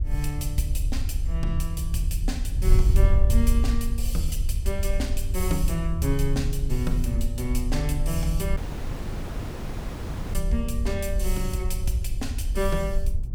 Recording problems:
wind noise; below 64 Hz, SNR -3 dB
dropout; at 8.5 s for 2 s

